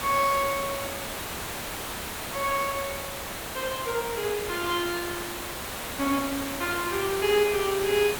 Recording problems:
background hiss; slope -3 dB per octave, SNR 5 dB

